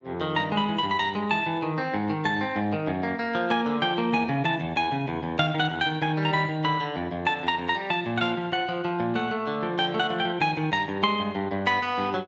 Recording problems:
codec artefacts; Speex, log-spectral distance 3 dB, nothing above 7.3 kHz

